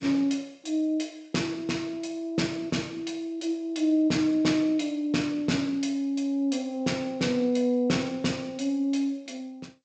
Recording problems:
codec artefacts; G.722, log-spectral distance 2 dB, nothing above 7.8 kHz

